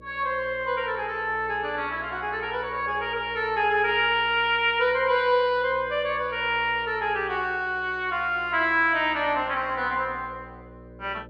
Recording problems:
hum; 60 Hz, harmonics up to 600 Hz, SNR 23 dB

